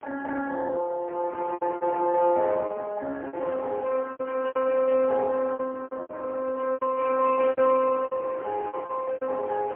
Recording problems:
telephone audio; 300 Hz to 2.9 kHz, AMR-NB, then MP3
wind noise; below 980 Hz, SNR 18 dB
lost packets; 13% of the sound replaced, filled with repeated pitch periods

